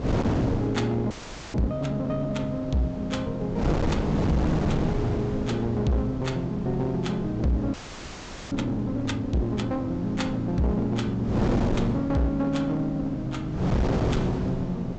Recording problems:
treble missing; nothing above 8 kHz
distortion; hard clipping, uneven, signal-to-distortion ratio 11 dB
electrical hum; 60 Hz, harmonics up to 900 Hz, SNR 19 dB
wind on the microphone; below 410 Hz, SNR 3 dB
audio freezing; at 1 s and at 7.5 s for 1 s

